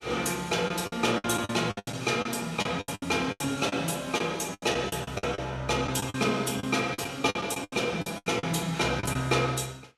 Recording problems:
lossy compression; Vorbis, log-spectral distance 4 dB, nothing above 12.7 kHz
lost packets; 14% of the sound replaced, filled with the last packet

